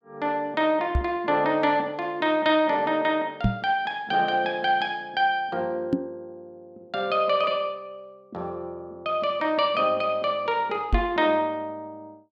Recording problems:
microphone bump; 4 times, first at 1 s; peak +5 dB vs average level

